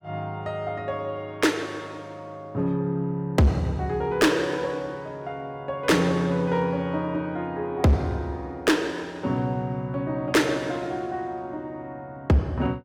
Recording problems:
distortion; hard clipping, signal-to-distortion ratio 10 dB

